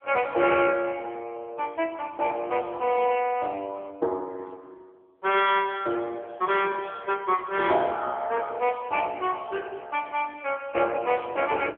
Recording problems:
phone line; 300 Hz to 3.4 kHz, AMR-NB

